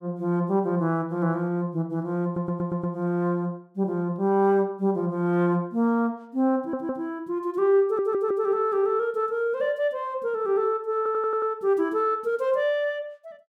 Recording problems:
stutter; 4 times, first at 2.5 s

